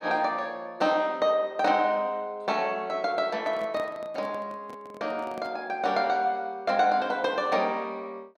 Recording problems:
microphone handling noise; from 3.5 to 5.5 s; peak -9 dB vs average level

